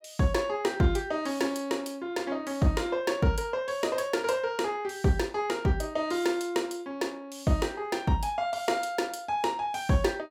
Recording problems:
none

